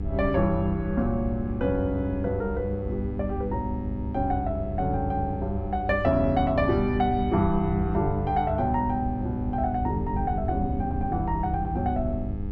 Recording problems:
hum; 50 Hz, harmonics up to 900 Hz, SNR 9 dB
low-frequency rumble; below 74 Hz, SNR 7 dB

